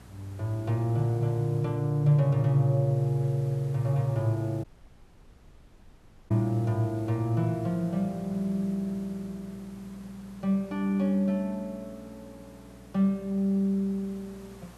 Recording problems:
electrical hum; 60 Hz, harmonics up to 660 Hz, SNR 25 dB
hiss; slope -5 dB per octave, SNR 26 dB
audio cutting out; at 4.5 s for 1.5 s

